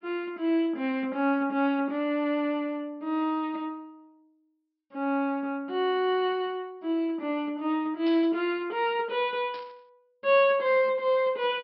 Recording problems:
treble cut off; nothing above 5.4 kHz
burst of static; at 8 s and at 9.5 s; peak -13 dB vs average level

